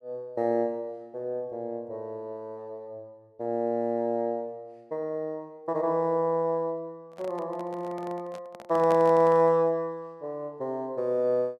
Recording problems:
handling noise; from 7 to 9.5 s; peak -4 dB vs average level

